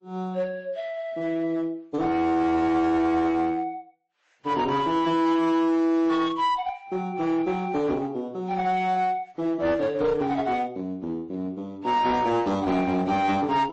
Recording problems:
lossy compression; AAC, then MP3, log-spectral distance 2 dB, nothing above 8.2 kHz
distortion; hard clipping, uneven, signal-to-distortion ratio 11 dB

